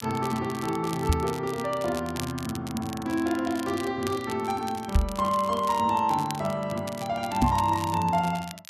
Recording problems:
crackle; vinyl, SNR 14 dB
microphone bump; at 1 s, at 5 s and at 7.5 s; peak +8 dB vs average level

